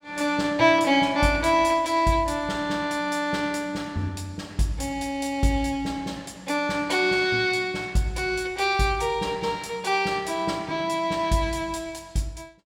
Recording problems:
none

